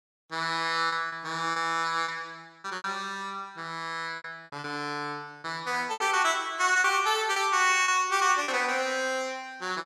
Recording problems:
packet loss; 8% of the sound replaced, filled with repeated pitch periods

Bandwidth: 15 kHz